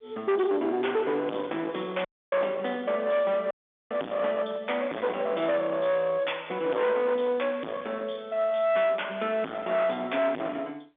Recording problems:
phone line; 240 Hz to 3.5 kHz, G.711
distorted audio; hard clipping, uneven, signal-to-distortion ratio 5 dB
audio cutting out; at 2 s and at 3.5 s

